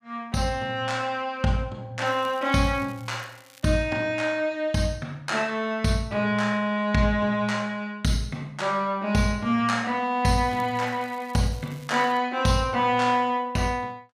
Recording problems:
crackle; from 2 to 3.5 s and from 10 to 12 s; loose cable, SNR 26 dB

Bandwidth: 15 kHz